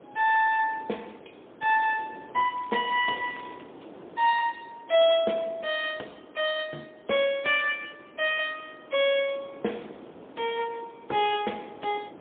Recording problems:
phone line; 240 Hz to 3.6 kHz, AMR-NB, then MP3
wind noise; below 690 Hz, SNR 21 dB
crackling; from 2.5 to 3.5 s; loose cable, SNR 26 dB

